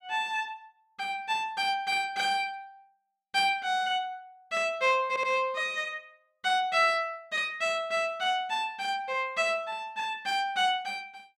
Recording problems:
stutter; at 5 s

